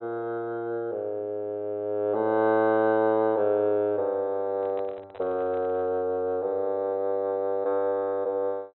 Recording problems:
treble cut off; nothing above 4 kHz
handling noise; from 4.5 to 6 s; peak -12 dB vs average level

